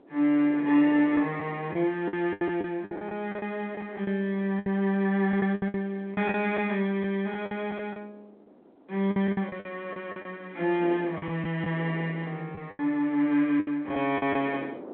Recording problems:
phone line; 240 Hz to 3.5 kHz, G.726
wind on the microphone; below 590 Hz, SNR 21 dB
packet loss; 11% of the sound replaced, filled with the last packet

